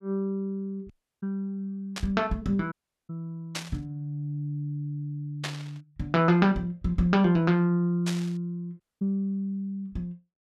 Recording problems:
audio cutting out; at 1 s, at 2.5 s and at 9 s
burst of static; 4 times, first at 2 s; peak 0 dB vs average level

